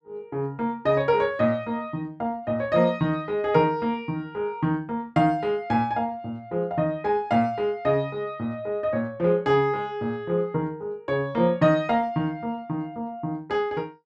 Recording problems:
none

